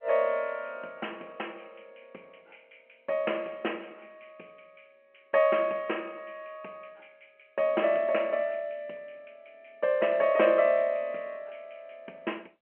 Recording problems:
phone line; 240 Hz to 3.1 kHz, G.711

